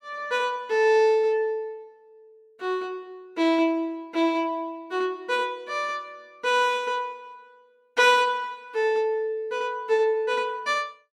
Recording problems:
none

